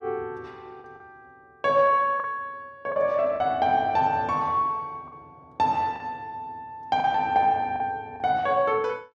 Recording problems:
packet loss; 5% of the sound replaced, filled with the last packet

